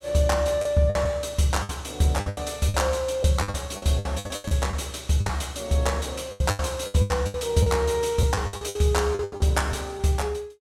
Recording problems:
lost packets; 15% of the sound replaced, filled with the last packet

